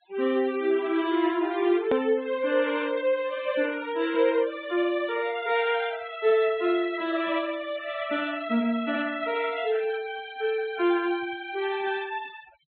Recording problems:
low-pass filter; nothing above 4 kHz
denoising artefacts; signal-to-artefact ratio 20 dB
click at an edit; at 2 s

